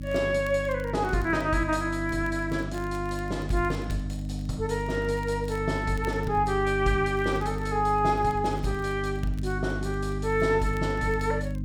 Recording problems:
hum; 50 Hz, harmonics up to 300 Hz, SNR 6 dB
crackling; vinyl, SNR 27 dB

